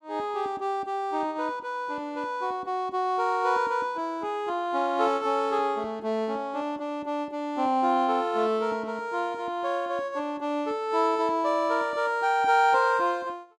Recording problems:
none

